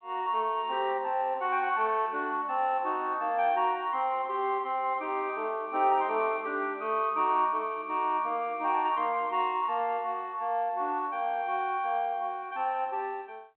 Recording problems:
phone line; 260 Hz to 3.3 kHz, G.726

